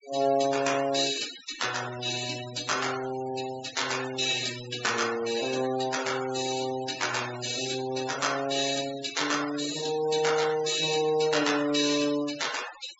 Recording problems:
treble missing; nothing above 8 kHz
denoising artefacts; signal-to-artefact ratio 11 dB

